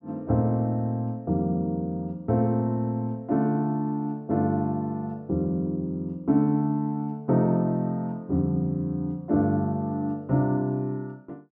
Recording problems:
none

